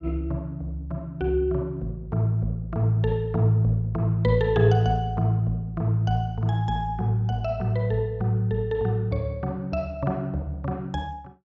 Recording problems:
none

